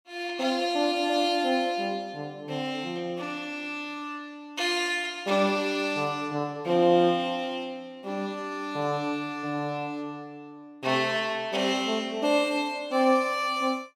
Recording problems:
none

